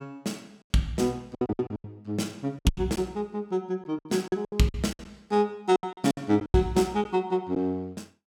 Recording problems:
packet loss; 13% of the sound replaced, filled with silence

